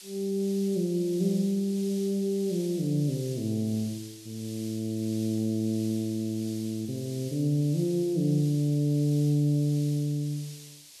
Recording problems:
hiss; SNR 17 dB

